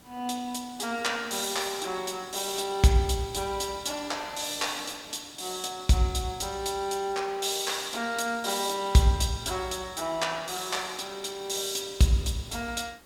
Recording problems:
hiss; slope -4 dB per octave, SNR 23 dB

